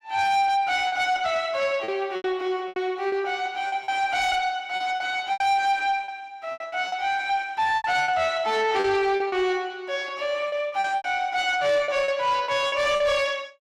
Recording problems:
distortion; soft clipping, signal-to-distortion ratio 11 dB
lost packets; 10% of the sound replaced, filled with repeated pitch periods

